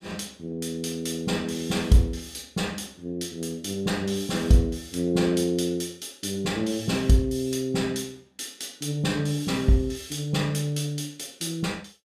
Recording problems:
none

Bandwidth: 15 kHz